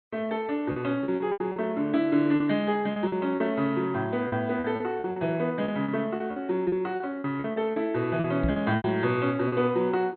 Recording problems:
lossy codec; MP2, log-spectral distance 2 dB, nothing above 4.1 kHz
lost packets; 12% of the sound replaced, filled with repeated pitch periods
knock on the microphone; at 8.5 s; peak +2 dB vs average level

